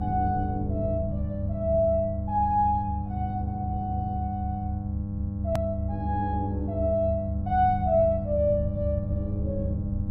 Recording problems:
hum; 50 Hz, harmonics up to 800 Hz, SNR 5 dB
rumble; below 110 Hz, strongest tone 74 Hz, SNR 6 dB
hard cut with a click; at 5.5 s

